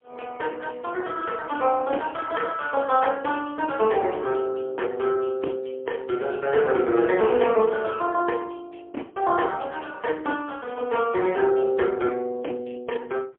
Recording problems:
telephone audio; 300 Hz to 3.3 kHz, AMR-NB, then MP3

